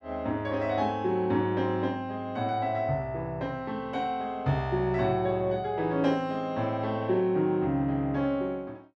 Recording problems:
none

